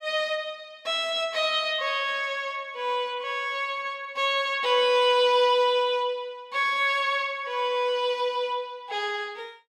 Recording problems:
none

